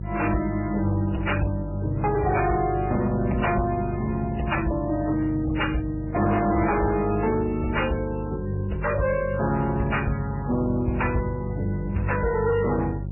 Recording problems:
lossy compression; MP3, then AAC, log-spectral distance 4 dB, nothing above 2.7 kHz
distortion; hard clipping, signal-to-distortion ratio 10 dB
hum; 50 Hz, harmonics up to 400 Hz, SNR 7 dB

